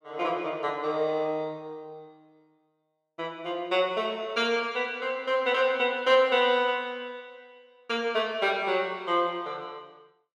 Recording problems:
none

